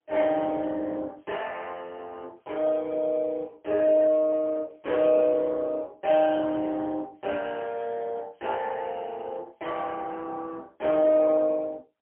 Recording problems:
phone line; 260 Hz to 3.7 kHz, AMR-NB, then MP3

